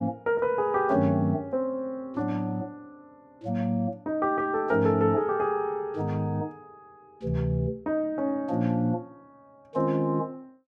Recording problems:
none

